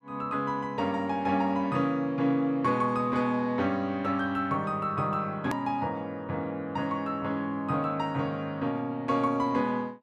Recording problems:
click at an edit; at 5.5 s

